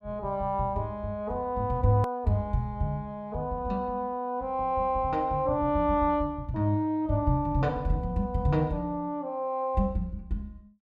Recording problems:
click at an edit; at 2 s

